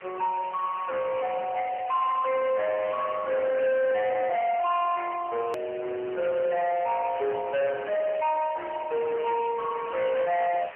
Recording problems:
telephone audio; 990 Hz to 2.5 kHz, AMR-NB
distorted audio; hard clipping, uneven, signal-to-distortion ratio 10 dB
hiss; SNR 18 dB
click at an edit; at 5.5 s

